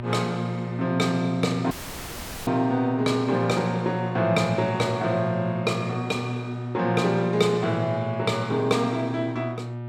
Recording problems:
hum; 60 Hz, harmonics up to 1.2 kHz, SNR 8 dB
audio cutting out; at 1.5 s for 1 s

